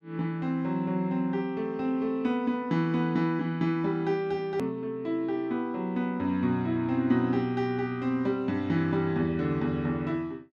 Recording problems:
hard cut with a click; at 4.5 s

